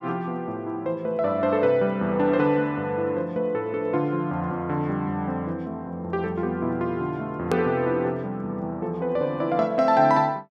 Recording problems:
click at an edit; at 7.5 s

